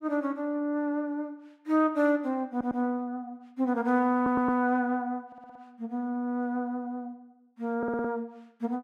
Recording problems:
audio stuttering; 4 times, first at 2.5 s

